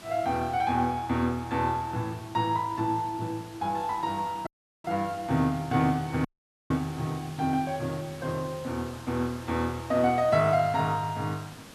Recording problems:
hiss; slope -3 dB per octave, SNR 18 dB
audio cutting out; at 4.5 s and at 6.5 s

